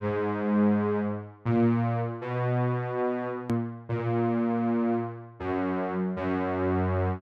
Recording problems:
edit click; at 3.5 s

